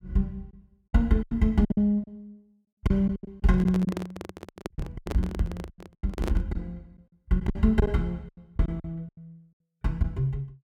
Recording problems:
lost packets; 12% of the sound replaced, filled with silence
handling noise; from 3.5 to 6.5 s; peak 0 dB vs average level

